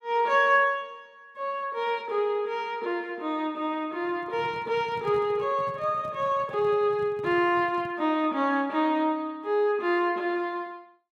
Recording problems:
handling noise; from 4 to 8 s; peak -9 dB vs average level

